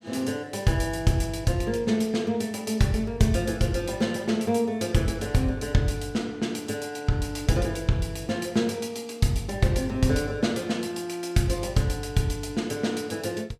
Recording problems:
none

